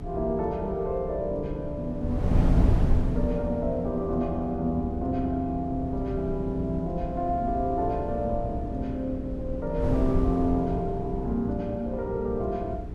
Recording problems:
hum; 60 Hz, harmonics up to 420 Hz, SNR 11 dB
wind on the microphone; below 110 Hz, SNR 4 dB

